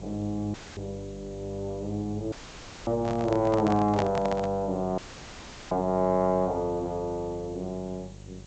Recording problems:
low-pass filter; nothing above 8 kHz
mains hum; 50 Hz, harmonics up to 950 Hz, SNR 15 dB
background hiss; slope +1 dB per octave, SNR 27 dB
dropout; at 0.5 s, at 2.5 s for 0.5 s and at 5 s for 0.5 s; filled with static
microphone handling noise; from 3 to 4.5 s; peak +3 dB vs average level

